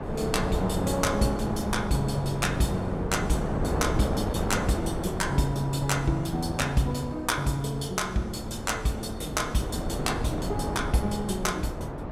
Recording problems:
wind noise; below 560 Hz, SNR 3 dB

